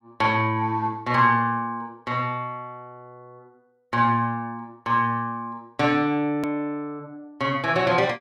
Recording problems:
click at an edit; at 6.5 s

